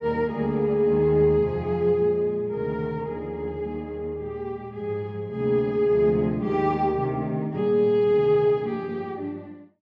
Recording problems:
none

